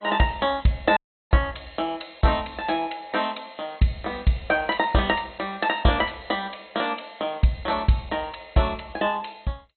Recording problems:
lossy codec; MP2, log-spectral distance 5 dB, nothing above 4.1 kHz
audio cutting out; at 1 s

